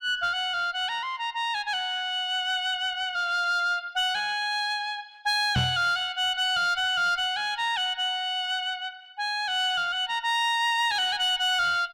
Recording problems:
distorted audio; soft clipping, signal-to-distortion ratio 11 dB
knock on the microphone; at 5.5 s; peak +3 dB vs average level

